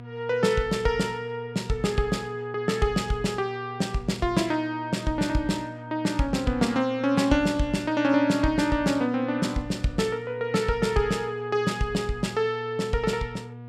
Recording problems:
hum; 60 Hz, harmonics up to 1.2 kHz, SNR 15 dB

